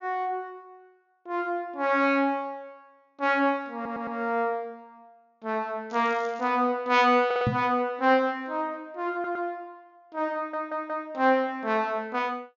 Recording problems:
treble missing; nothing above 7 kHz
stutter; 4 times, first at 4 s
crackling; at 6 s; loose cable, SNR 27 dB
knock on the microphone; at 7.5 s; peak +3 dB vs average level

